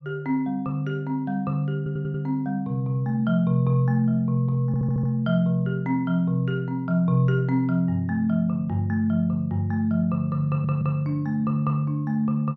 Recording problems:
audio stuttering; at 2 s, at 4.5 s and at 10 s

